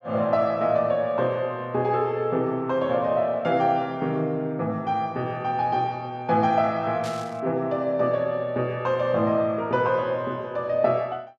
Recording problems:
burst of static; at 7 s; peak -10 dB vs average level

